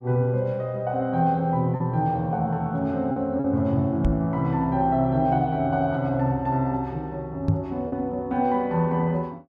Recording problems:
packet loss; 1.7% of the sound replaced, filled with repeated pitch periods
knock on the microphone; at 4 s and at 7.5 s; peak +6 dB vs average level

